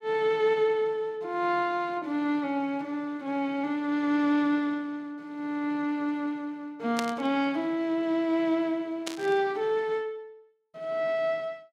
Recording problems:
burst of static; at 7 s and at 9 s; peak 0 dB vs average level

